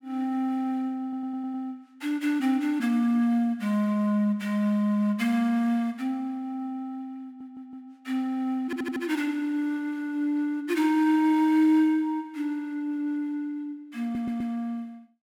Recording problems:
stutter; 4 times, first at 1 s

